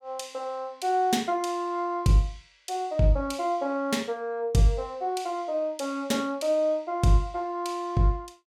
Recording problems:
none

